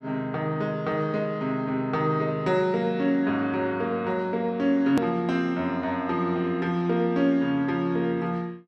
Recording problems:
hard cut with a click; at 5 s

